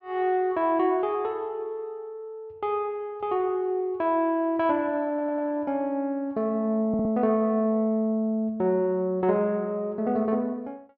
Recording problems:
stutter; at 5 s and at 7 s

